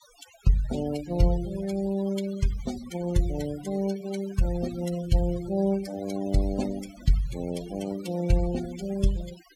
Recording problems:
denoising artefacts; signal-to-artefact ratio 14 dB

